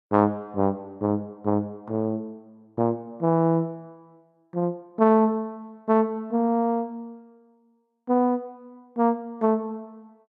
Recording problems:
none

